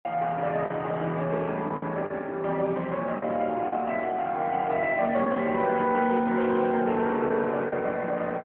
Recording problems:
phone line; 190 Hz to 3.3 kHz, AMR-NB
lost packets; 4% of the sound replaced, filled with the last packet

